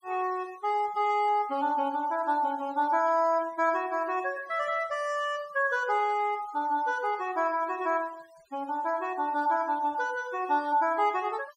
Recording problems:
noise reduction artefacts; signal-to-artefact ratio 24 dB

